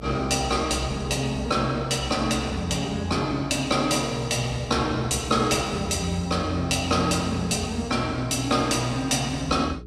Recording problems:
electrical hum; 60 Hz, harmonics up to 420 Hz, SNR 17 dB

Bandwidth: 14.5 kHz